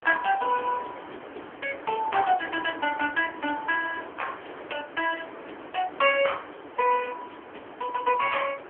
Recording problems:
telephone audio; 240 Hz to 3.3 kHz, AMR-NB
background hiss; SNR 14 dB

